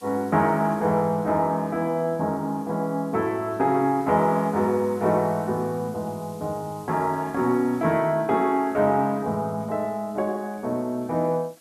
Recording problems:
hiss; slope 0 dB per octave, SNR 27 dB

